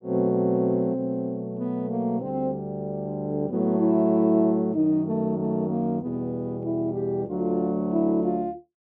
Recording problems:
none

